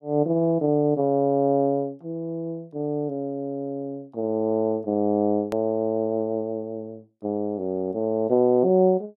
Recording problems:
click at an edit; at 5.5 s

